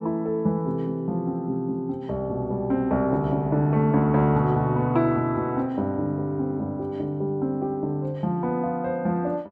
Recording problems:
none

